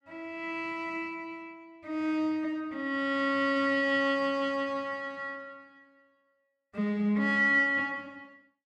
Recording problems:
none

